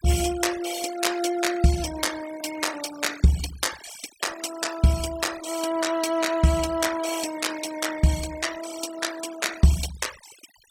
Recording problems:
noise reduction artefacts; signal-to-artefact ratio 14 dB

